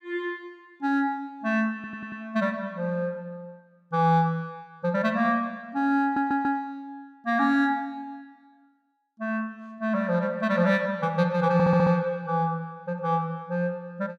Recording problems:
audio stuttering; at 2 s, at 6 s and at 12 s

